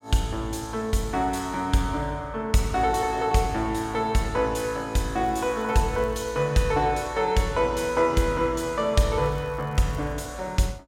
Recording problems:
crackling; from 5 to 6.5 s and at 9 s; loose cable, SNR 30 dB

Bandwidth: 16.5 kHz